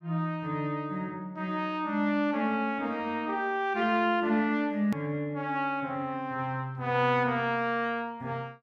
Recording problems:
hard cut with a click; at 5 s

